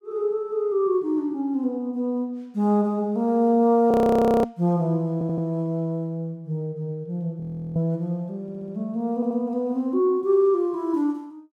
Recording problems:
frozen audio; at 4 s for 0.5 s and at 7.5 s
audio stuttering; at 5 s, at 8.5 s and at 9 s

